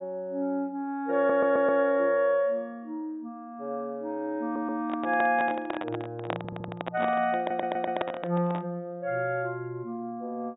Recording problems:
treble cut off; nothing above 4 kHz
stutter; 4 times, first at 1 s
handling noise; from 5 to 8.5 s; peak +3 dB vs average level

